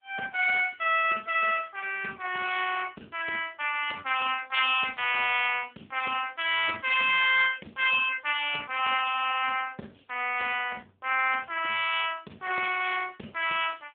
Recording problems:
telephone audio; 280 Hz to 3.4 kHz, AMR-NB

